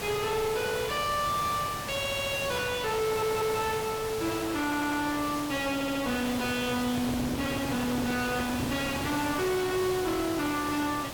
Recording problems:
distortion; soft clipping, signal-to-distortion ratio 5 dB
hiss; slope -3 dB per octave, SNR 7 dB
stutter; 4 times, first at 2 s
microphone handling noise; from 6.5 to 9 s; peak +1 dB vs average level

